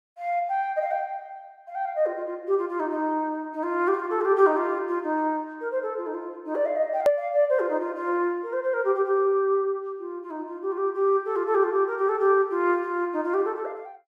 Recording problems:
edit click; at 7 s

